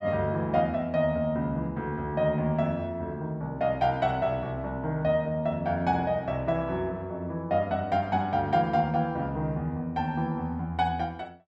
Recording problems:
none

